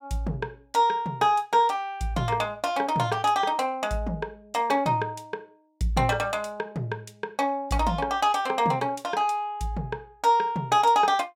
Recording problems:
none

